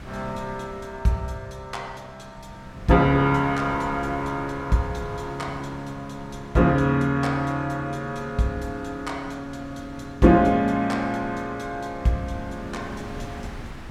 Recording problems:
wind on the microphone; below 630 Hz, SNR 18 dB

